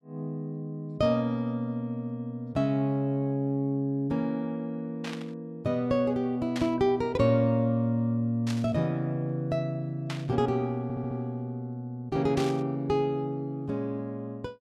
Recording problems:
burst of static; 5 times, first at 5 s; peak -4 dB vs average level
stutter; at 11 s

